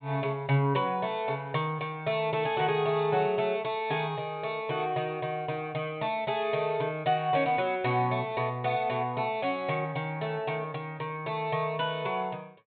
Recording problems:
low-pass filter; nothing above 4 kHz

